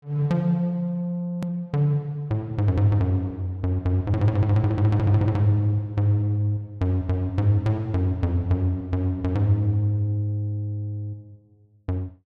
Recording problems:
hard cut with a click; at 1.5 s

